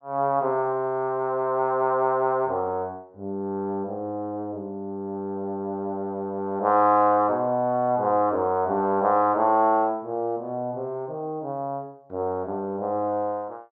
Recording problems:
low-pass filter; nothing above 8 kHz

